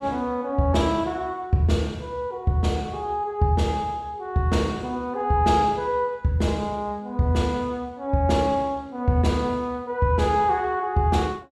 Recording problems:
none

